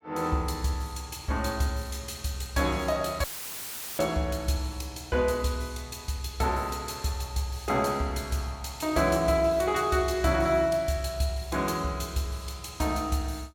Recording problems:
dropout; at 3 s for 1 s; filled with static

